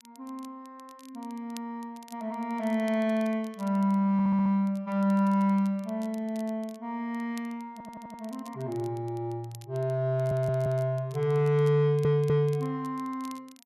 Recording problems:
crackle; vinyl, SNR 27 dB
stutter; 4 times, first at 4 s

